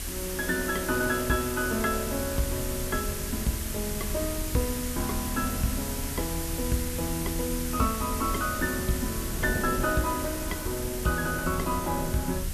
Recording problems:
background hiss; slope +1 dB per octave, SNR 4 dB
low-frequency rumble; below 80 Hz, SNR 8 dB
wind noise; below 430 Hz, SNR 15 dB

